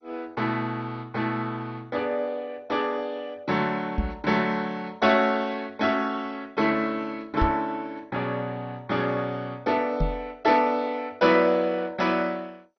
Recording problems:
lossy codec; MP2, log-spectral distance 3 dB, nothing above 5.8 kHz
microphone bump; at 4 s, at 7.5 s and at 10 s; peak +3 dB vs average level

